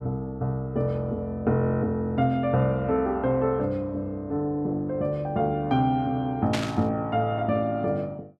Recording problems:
static burst; at 6.5 s; peak 0 dB vs average level

